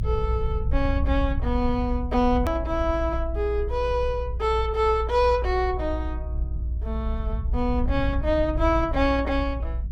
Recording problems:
low-frequency rumble; below 64 Hz, strongest tone 58 Hz, SNR 4 dB
click at an edit; at 2.5 s

